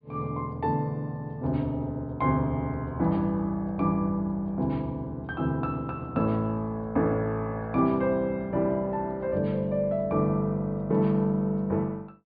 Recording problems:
treble cut off; nothing above 4.8 kHz

